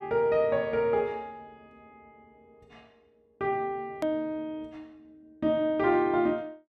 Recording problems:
hard cut with a click; at 4 s

